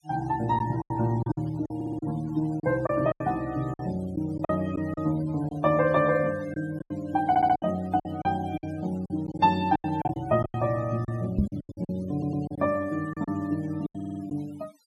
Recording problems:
noise reduction artefacts; signal-to-artefact ratio 22 dB
lost packets; 11% of the sound replaced, filled with silence
stutter; 4 times, first at 2 s
microphone bump; at 11 s; peak +7 dB vs average level

